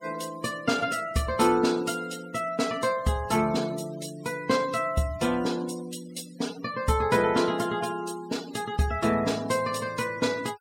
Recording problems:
noise reduction artefacts; signal-to-artefact ratio 17 dB

